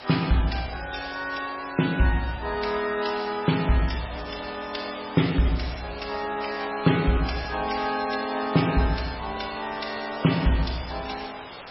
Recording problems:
lossy compression; MP3, log-spectral distance 11 dB, nothing above 5.5 kHz
background hiss; SNR 14 dB

